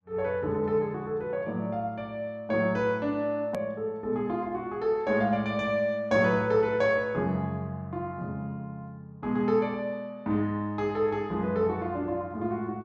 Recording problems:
hard cut with a click; at 3.5 s

